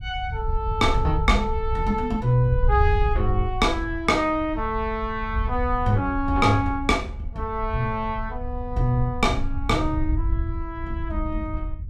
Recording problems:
wind on the microphone; below 76 Hz, SNR 5 dB

